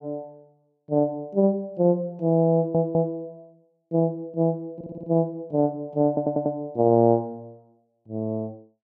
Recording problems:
stutter; at 2.5 s, at 5 s and at 6 s

